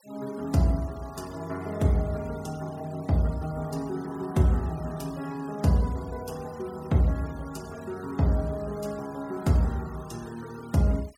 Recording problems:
denoising artefacts; signal-to-artefact ratio 22 dB

